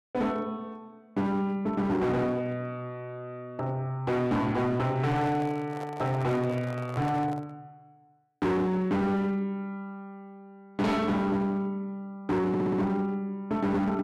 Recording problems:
distorted audio; hard clipping, signal-to-distortion ratio 7 dB
handling noise; from 5 to 7.5 s; peak -8 dB vs average level
audio stuttering; at 12 s

